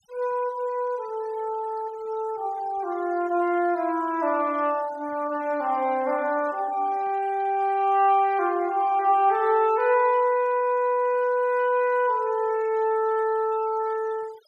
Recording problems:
noise reduction artefacts; signal-to-artefact ratio 25 dB

